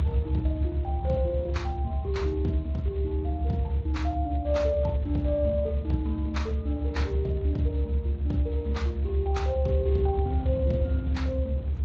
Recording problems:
lossy codec; Speex, log-spectral distance 2 dB
rumble; below 76 Hz, strongest tone 74 Hz, SNR -2 dB

